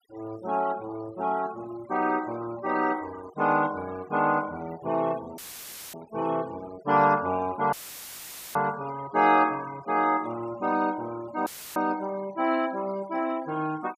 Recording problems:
denoising artefacts; signal-to-artefact ratio 19 dB
dropout; at 5.5 s for 0.5 s, at 7.5 s for 1 s and at 11 s; filled with static

